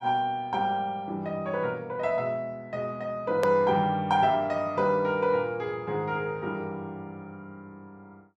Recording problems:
edit click; at 3.5 s

